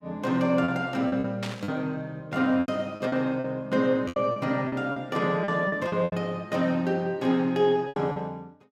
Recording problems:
lost packets; 10% of the sound replaced, filled with repeated pitch periods
burst of static; at 1.5 s; peak -4 dB vs average level

